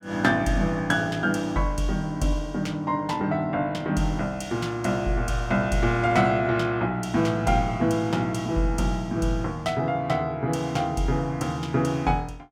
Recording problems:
none

